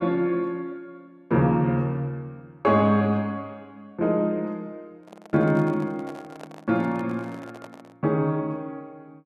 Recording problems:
microphone handling noise; from 5 to 8 s; peak -12 dB vs average level

